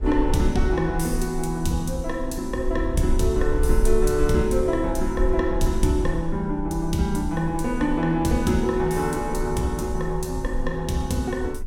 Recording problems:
rumble; below 48 Hz, strongest tone 18 Hz, SNR 7 dB

